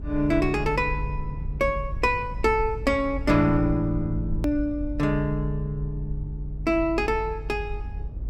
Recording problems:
rumble; below 68 Hz, strongest tone 48 Hz, SNR 8 dB
edit click; at 4.5 s

